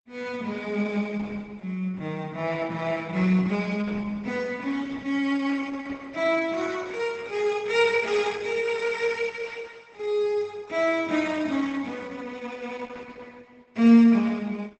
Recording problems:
codec artefacts; Opus, log-spectral distance 4 dB, nothing above 8 kHz

